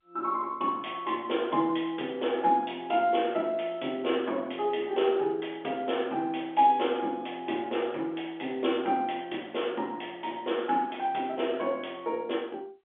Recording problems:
telephone audio; 240 Hz to 3.5 kHz, G.711

